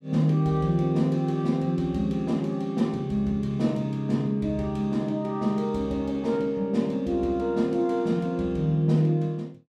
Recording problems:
none

